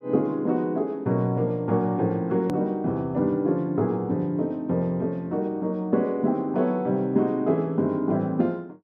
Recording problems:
hard cut with a click; at 2.5 s

